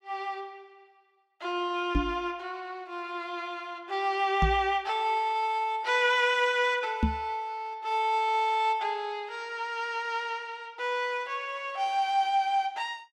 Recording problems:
knock on the microphone; at 2 s, at 4.5 s and at 7 s; peak +7 dB vs average level

